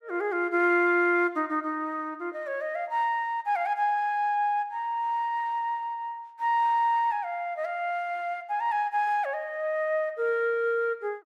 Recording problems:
none

